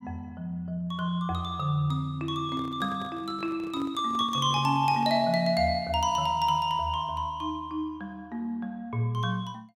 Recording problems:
handling noise; from 2.5 to 5.5 s; peak -11 dB vs average level

